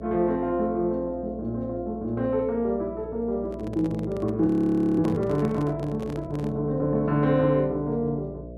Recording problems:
hum; 60 Hz, harmonics up to 660 Hz, SNR 15 dB
microphone handling noise; from 3.5 to 6.5 s; peak -8 dB vs average level
audio freezing; at 4.5 s for 0.5 s

